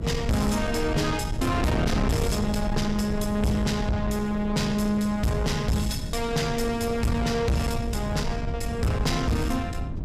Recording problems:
distorted audio; soft clipping, signal-to-distortion ratio 6 dB
low-frequency rumble; below 120 Hz, SNR 9 dB
wind noise; below 320 Hz, SNR 8 dB

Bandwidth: 15 kHz